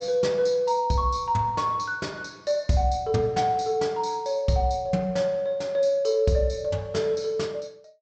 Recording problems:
low-pass filter; nothing above 8 kHz

